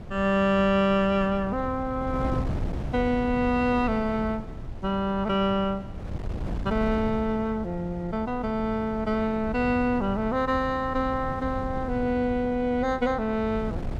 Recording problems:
wind noise; below 200 Hz, SNR 10 dB

